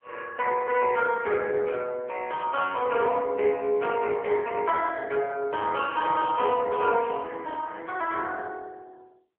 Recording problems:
phone line; 340 Hz to 3.3 kHz, AMR-NB

